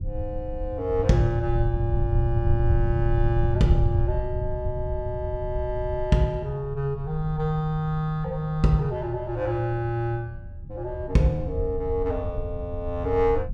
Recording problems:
low-frequency rumble; below 92 Hz, SNR 5 dB

